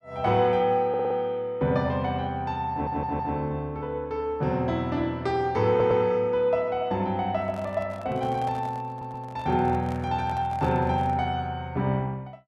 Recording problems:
stutter; 4 times, first at 1 s
handling noise; from 7.5 to 11 s; peak -10 dB vs average level

